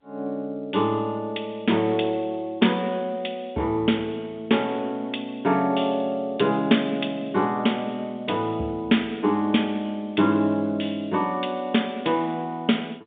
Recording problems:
phone line; 130 Hz to 3.7 kHz, G.711

